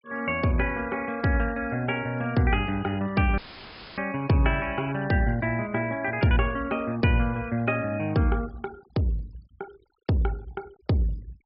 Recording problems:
treble cut off; nothing above 5.5 kHz
denoising artefacts; signal-to-artefact ratio 25 dB
dropout; at 3.5 s for 0.5 s; filled with static

